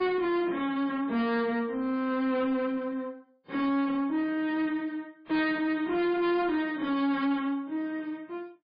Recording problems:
codec artefacts; MP3, then AAC, log-spectral distance 2 dB, nothing above 4.1 kHz
distortion; soft clipping, signal-to-distortion ratio 10 dB

